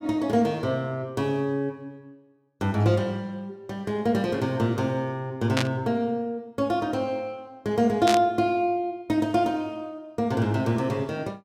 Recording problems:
static burst; at 5.5 s and at 8 s; peak +3 dB vs average level

